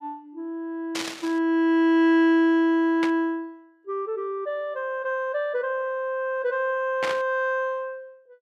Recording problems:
burst of static; at 1 s, at 3 s and at 7 s; peak -1 dB vs average level

